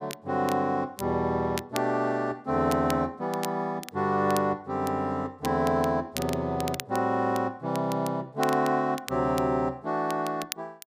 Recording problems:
crackling; vinyl, SNR 15 dB

